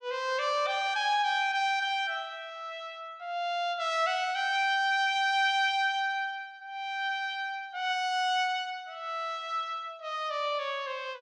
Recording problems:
none

